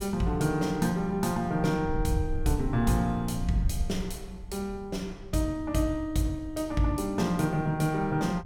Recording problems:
wind on the microphone; below 82 Hz, SNR 11 dB

